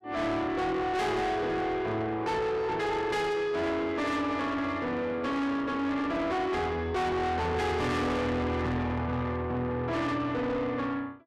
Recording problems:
distorted audio; soft clipping, signal-to-distortion ratio 7 dB

